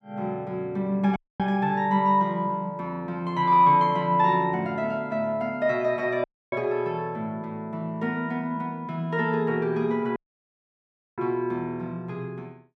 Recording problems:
dropout; at 1 s, at 6 s and at 10 s for 1 s

